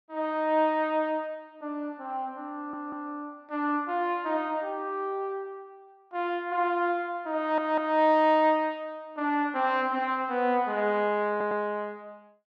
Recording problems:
stutter; at 2.5 s, at 7.5 s and at 11 s

